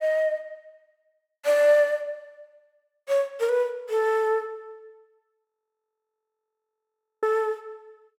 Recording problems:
audio freezing; at 5.5 s for 2 s

